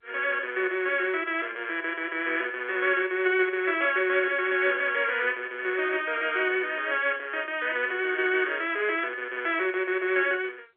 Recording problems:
telephone audio; 320 Hz to 3.4 kHz, G.711

